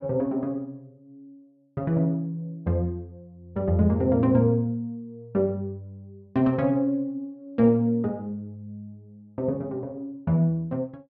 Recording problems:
none

